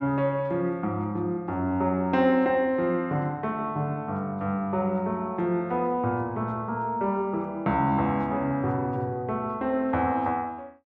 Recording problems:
none

